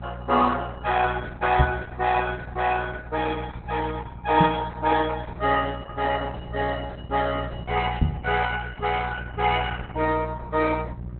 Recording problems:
lossy codec; Opus, log-spectral distance 5 dB
hum; 60 Hz, harmonics up to 600 Hz, SNR 12 dB
microphone thump; at 1.5 s, at 4.5 s and at 8 s; peak +7 dB vs average level

